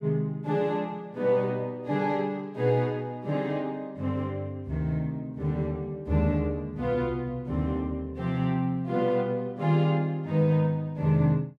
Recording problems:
none

